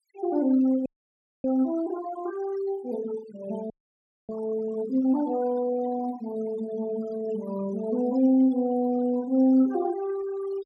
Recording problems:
denoising artefacts; signal-to-artefact ratio 19 dB
frozen audio; at 1 s for 0.5 s and at 3.5 s for 0.5 s

